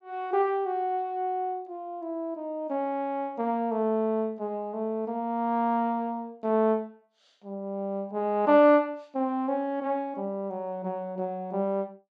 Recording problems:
none

